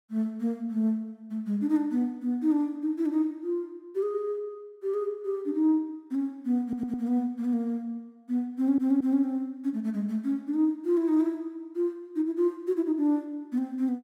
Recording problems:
stutter; at 6.5 s and at 8.5 s

